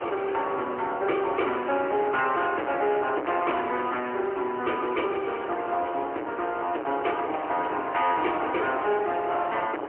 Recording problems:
phone line; 280 Hz to 3.1 kHz, AMR-NB, then MP3
distorted audio; hard clipping, uneven, signal-to-distortion ratio 6 dB
hiss; SNR 27 dB
wind noise; below 1.4 kHz, SNR 12 dB

